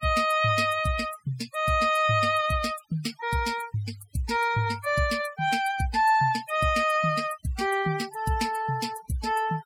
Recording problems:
noise reduction artefacts; signal-to-artefact ratio 15 dB

